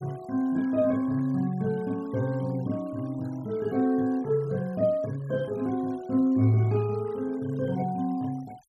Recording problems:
noise reduction artefacts; signal-to-artefact ratio 25 dB

